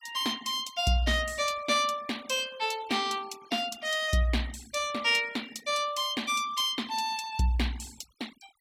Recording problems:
noise reduction artefacts; signal-to-artefact ratio 21 dB

